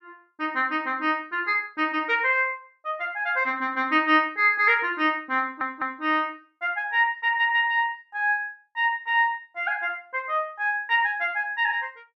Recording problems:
stutter; at 5.5 s

